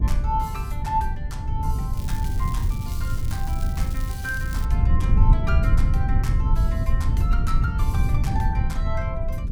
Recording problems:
rumble; below 92 Hz, SNR -8 dB
crackle; from 2 to 4.5 s; loose cable, SNR 11 dB

